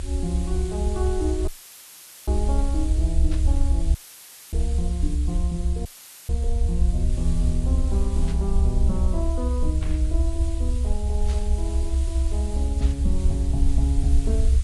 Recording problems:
codec artefacts; AAC, log-spectral distance 2 dB
background hiss; slope +2 dB per octave, SNR 12 dB
low-frequency rumble; below 68 Hz, SNR -7 dB
audio cutting out; at 1.5 s for 1 s, at 4 s for 0.5 s and at 6 s; filled with static
static burst; 5 times, first at 3.5 s; peak -6 dB vs average level

